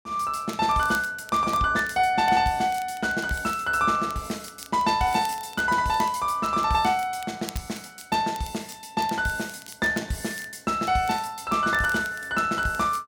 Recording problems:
crackle; vinyl, SNR 21 dB

